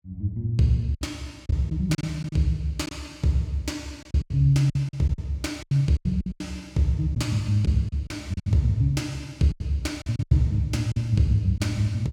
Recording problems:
lost packets; 10% of the sound replaced, filled with silence

